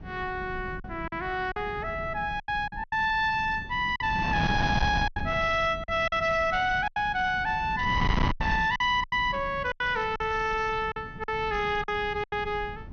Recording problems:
treble missing; nothing above 6.4 kHz
distorted audio; hard clipping, uneven, signal-to-distortion ratio 8 dB
wind on the microphone; below 270 Hz, SNR 9 dB
lost packets; 9% of the sound replaced, filled with silence

